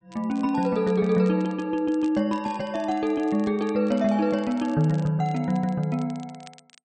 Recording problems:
crackling; vinyl, SNR 27 dB

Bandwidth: 8.5 kHz